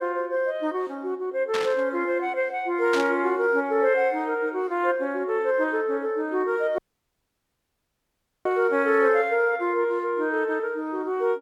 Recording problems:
static burst; at 1.5 s and at 3 s; peak -2 dB vs average level
dropout; at 7 s for 1.5 s

